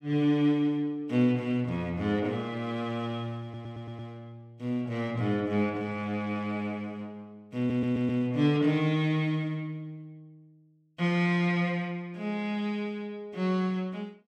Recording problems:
stutter; at 3.5 s and at 7.5 s

